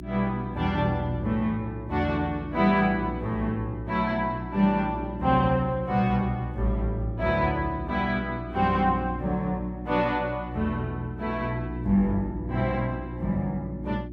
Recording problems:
hum; 60 Hz, harmonics up to 360 Hz, SNR 10 dB

